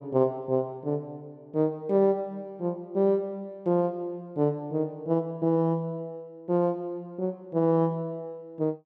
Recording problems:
none

